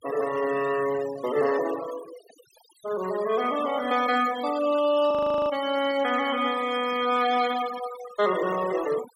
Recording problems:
denoising artefacts; signal-to-artefact ratio 15 dB
frozen audio; at 5 s

